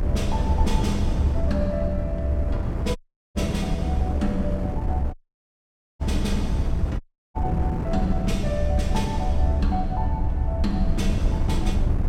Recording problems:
rumble; below 78 Hz, SNR 0 dB
wind noise; below 310 Hz, SNR 4 dB
audio cutting out; at 3 s, at 5 s for 1 s and at 7 s

